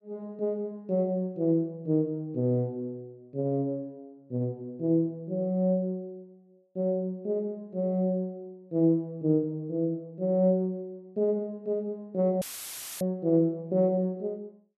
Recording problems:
audio cutting out; at 12 s for 0.5 s; filled with static

